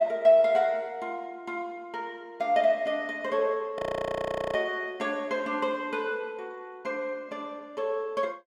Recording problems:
frozen audio; at 4 s for 1 s

